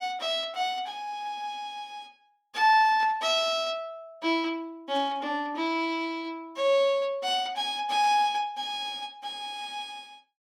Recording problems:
static burst; at 3 s, at 5 s and at 8 s; peak -14 dB vs average level

